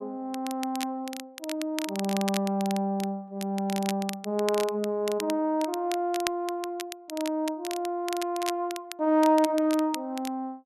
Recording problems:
crackle; vinyl, SNR 11 dB

